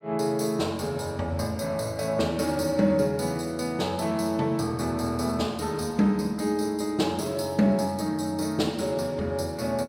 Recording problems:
none

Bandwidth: 16.5 kHz